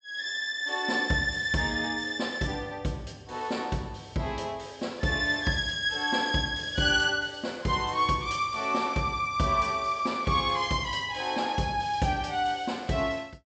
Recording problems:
treble missing; nothing above 8 kHz

